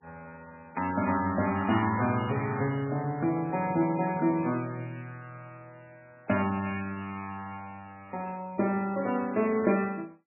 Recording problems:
lossy codec; MP3, log-spectral distance 3 dB, nothing above 2.4 kHz

